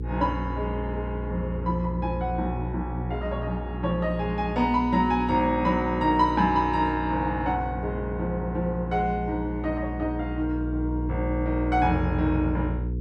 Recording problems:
hum; 60 Hz, harmonics up to 480 Hz, SNR 6 dB

